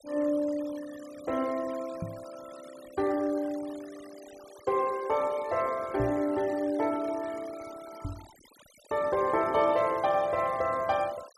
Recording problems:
denoising artefacts; signal-to-artefact ratio 20 dB
microphone thump; at 2 s, at 6 s and at 8 s; peak -1 dB vs average level

